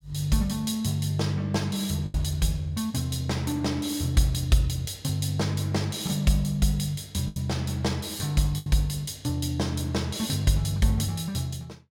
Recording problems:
lost packets; 2% of the sound replaced, filled with the last packet

